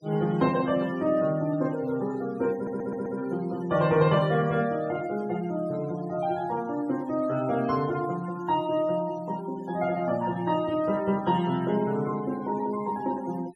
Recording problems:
noise reduction artefacts; signal-to-artefact ratio 21 dB
audio stuttering; at 2.5 s

